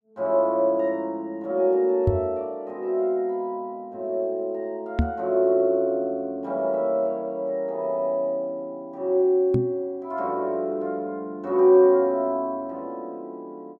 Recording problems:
knock on the microphone; at 2 s, at 5 s and at 9.5 s; peak +5 dB vs average level

